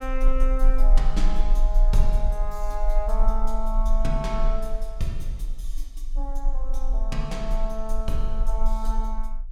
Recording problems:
low-frequency rumble; below 32 Hz, strongest tone 28 Hz, SNR -5 dB

